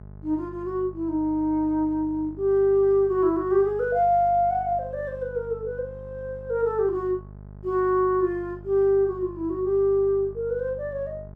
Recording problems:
electrical hum; 50 Hz, harmonics up to 850 Hz, SNR 19 dB

